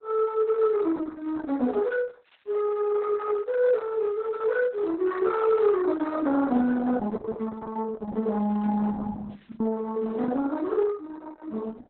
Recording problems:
lossy compression; Opus, then Opus, log-spectral distance 3 dB, nothing above 4 kHz
lost packets; 2% of the sound replaced, filled with the last packet

